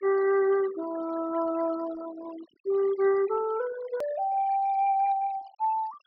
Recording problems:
low-pass filter; nothing above 5.5 kHz
noise reduction artefacts; signal-to-artefact ratio 20 dB
hard cut with a click; at 4 s

